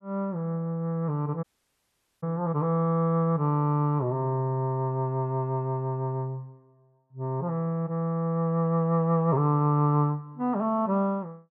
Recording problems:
dropout; at 1.5 s for 1 s

